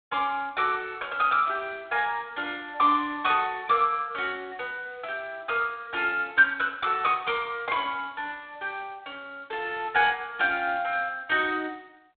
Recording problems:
phone line; 300 Hz to 3.5 kHz, G.726

